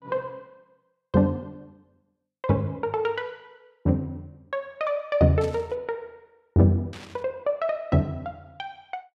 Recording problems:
burst of static; at 5.5 s and at 7 s; peak -13 dB vs average level

